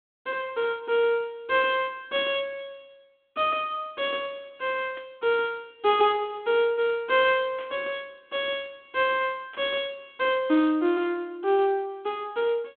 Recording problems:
telephone audio; 220 Hz to 3.6 kHz, G.726
static burst; 4 times, first at 1.5 s; peak -14 dB vs average level

